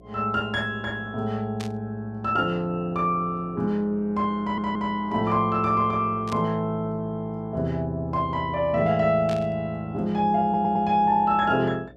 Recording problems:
electrical hum; 60 Hz, harmonics up to 720 Hz, SNR 25 dB
static burst; at 1.5 s, at 6.5 s and at 9.5 s; peak -8 dB vs average level
audio stuttering; at 4.5 s and at 10 s

